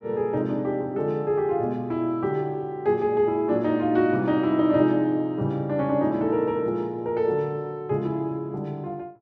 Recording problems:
none

